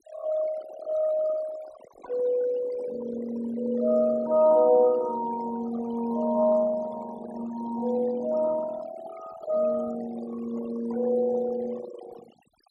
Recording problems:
denoising artefacts; signal-to-artefact ratio 17 dB

